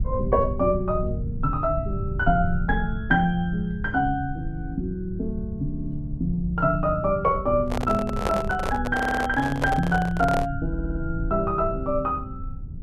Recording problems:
rumble; below 110 Hz, SNR 8 dB
audio stuttering; at 5.5 s, at 9 s and at 11 s
microphone handling noise; from 7.5 to 11 s; peak +2 dB vs average level

